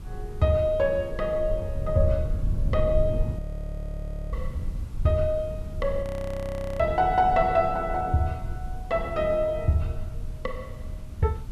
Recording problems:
background hiss; slope -3 dB per octave, SNR 30 dB
rumble; below 86 Hz, SNR 8 dB
frozen audio; at 3.5 s for 1 s and at 6 s for 1 s

